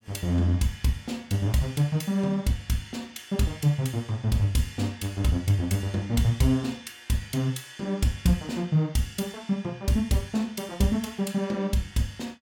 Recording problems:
none

